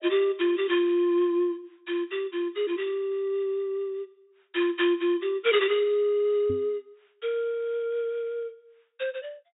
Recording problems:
treble cut off; nothing above 4 kHz
knock on the microphone; at 6.5 s; peak -4 dB vs average level

